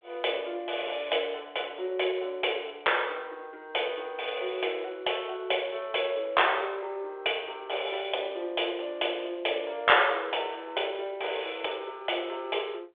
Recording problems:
telephone audio; 320 Hz to 3.6 kHz, G.726

